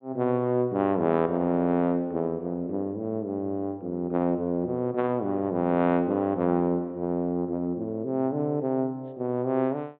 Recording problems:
treble missing; nothing above 4 kHz

